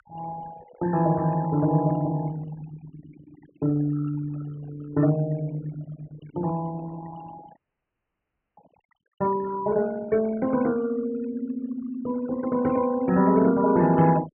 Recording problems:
low-pass filter; nothing above 3 kHz
noise reduction artefacts; signal-to-artefact ratio 18 dB
audio freezing; at 7.5 s for 1 s

